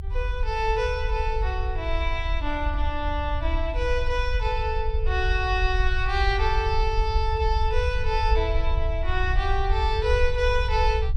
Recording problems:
rumble; below 68 Hz, SNR 1 dB

